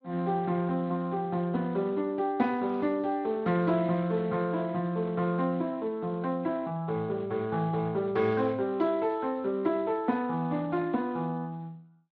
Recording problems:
lossy codec; Speex, log-spectral distance 2 dB

